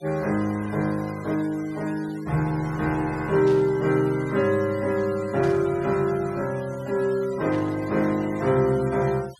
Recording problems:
denoising artefacts; signal-to-artefact ratio 20 dB
static burst; at 3.5 s, at 5.5 s and at 7.5 s; peak -14 dB vs average level

